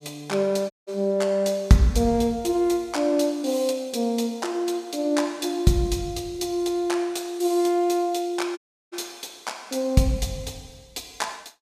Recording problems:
audio cutting out; at 0.5 s and at 8.5 s

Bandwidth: 15 kHz